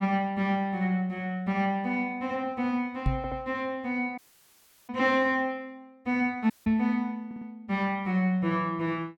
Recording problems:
knock on the microphone; at 3 s and at 6.5 s; peak +5 dB vs average level
stutter; at 3 s and at 7.5 s
audio cutting out; at 4 s for 0.5 s and at 6.5 s

